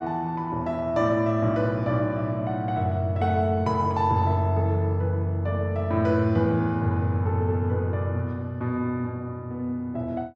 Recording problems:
none

